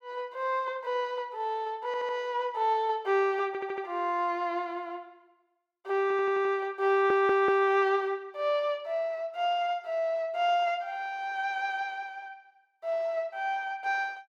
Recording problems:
stutter; 4 times, first at 2 s

